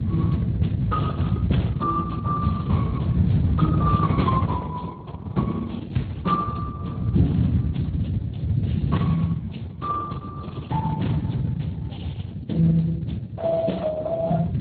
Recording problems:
codec artefacts; Opus, then Speex, log-spectral distance 3 dB
rumble; below 170 Hz, SNR -1 dB

